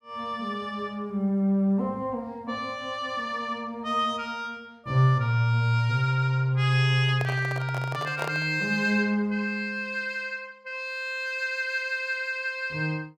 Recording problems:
microphone handling noise; from 7 to 8.5 s; peak -2 dB vs average level

